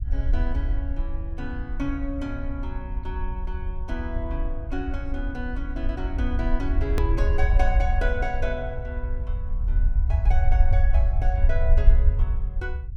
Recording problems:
low-frequency rumble; below 62 Hz, SNR -6 dB
edit click; at 7 s

